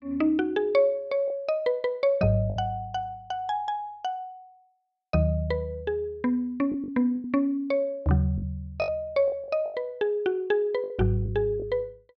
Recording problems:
packet loss; 5% of the sound replaced, filled with the last packet

